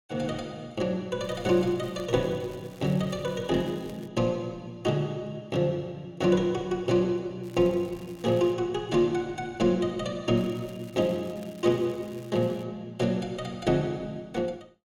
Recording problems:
crackle; from 1 to 4 s, from 7.5 to 8.5 s and from 10 to 13 s; loose cable, SNR 26 dB

